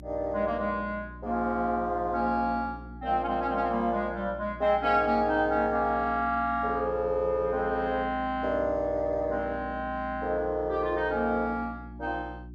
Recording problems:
hum; 60 Hz, harmonics up to 360 Hz, SNR 16 dB

